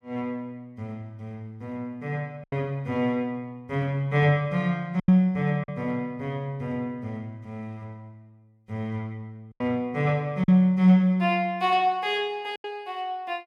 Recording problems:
lost packets; 3% of the sound replaced, filled with silence

